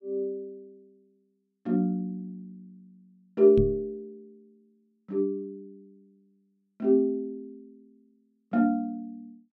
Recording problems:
knock on the microphone; at 3.5 s; peak +3 dB vs average level

